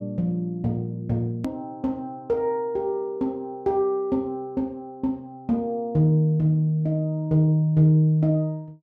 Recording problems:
hard cut with a click; at 1.5 s

